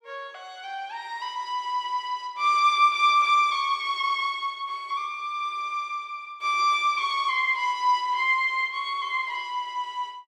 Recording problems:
none

